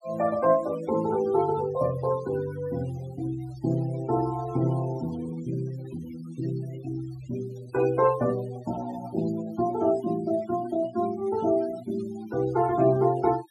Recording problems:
denoising artefacts; signal-to-artefact ratio 19 dB

